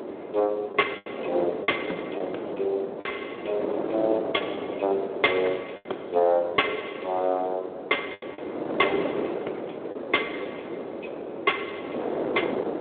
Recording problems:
telephone audio; 300 Hz to 3.5 kHz, Speex
wind on the microphone; below 620 Hz, SNR 6 dB
lost packets; 4% of the sound replaced, filled with the last packet

